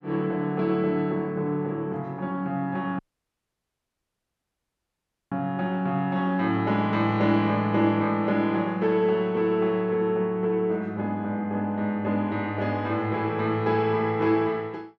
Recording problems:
audio cutting out; at 3 s for 2.5 s

